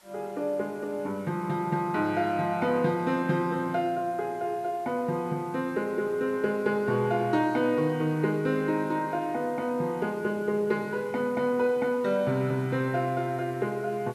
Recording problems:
background hiss; SNR 27 dB

